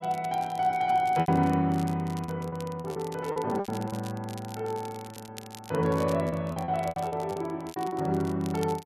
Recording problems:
crackle; vinyl, SNR 20 dB
lost packets; 10% of the sound replaced, filled with repeated pitch periods

